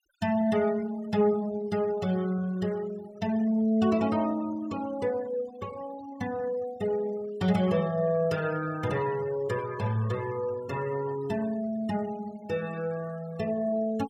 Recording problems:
noise reduction artefacts; signal-to-artefact ratio 20 dB

